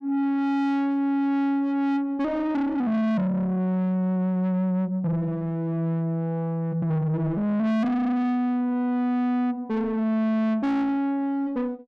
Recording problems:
distorted audio; soft clipping, signal-to-distortion ratio 8 dB

